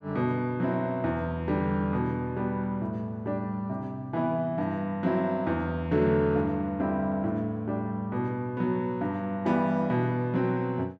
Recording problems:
none

